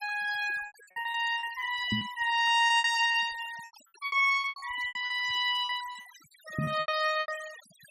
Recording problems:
denoising artefacts; signal-to-artefact ratio 18 dB
lost packets; 17% of the sound replaced, filled with repeated pitch periods
microphone bump; at 2 s and at 6.5 s; peak 0 dB vs average level

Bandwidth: 14.5 kHz